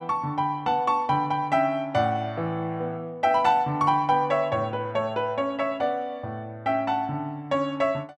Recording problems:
none

